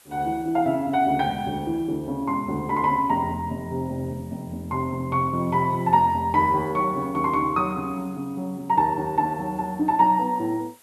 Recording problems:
hiss; slope -1 dB per octave, SNR 29 dB

